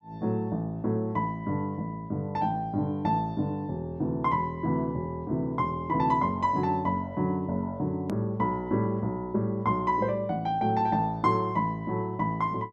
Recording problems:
edit click; at 8 s

